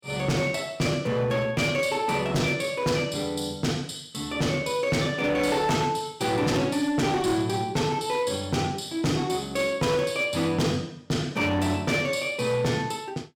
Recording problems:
distortion; hard clipping, signal-to-distortion ratio 11 dB

